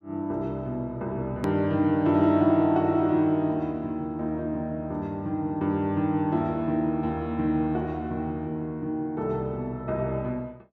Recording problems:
click at an edit; at 1.5 s

